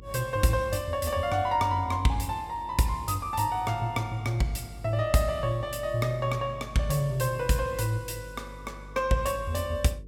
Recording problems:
hum; 50 Hz, harmonics up to 500 Hz, SNR 19 dB

